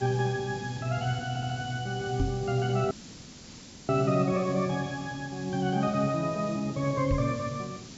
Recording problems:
treble cut off; nothing above 8 kHz
background hiss; SNR 16 dB
audio stuttering; at 1.5 s
microphone thump; at 2 s and at 7 s; peak +4 dB vs average level
dropout; at 3 s for 1 s

